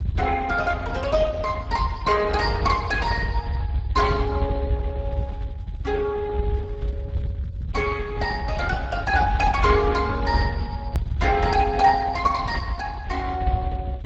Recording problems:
lossy codec; Speex, log-spectral distance 2 dB, nothing above 7.3 kHz
low-frequency rumble; below 110 Hz, SNR 5 dB
edit click; at 11 s

